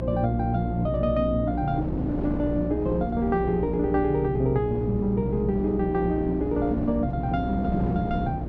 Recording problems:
electrical hum; 60 Hz, harmonics up to 360 Hz, SNR 7 dB
wind noise; below 410 Hz, SNR 8 dB

